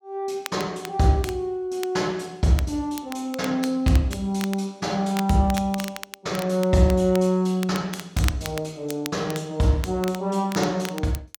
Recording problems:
crackling; vinyl, SNR 14 dB

